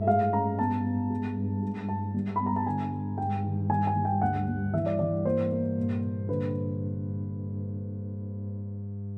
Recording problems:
hum; 50 Hz, harmonics up to 500 Hz, SNR 4 dB

